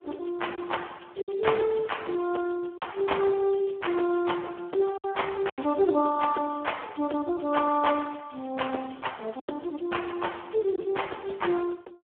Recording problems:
phone line; 260 Hz to 3.4 kHz, Speex
packet loss; 3% of the sound replaced, filled with silence

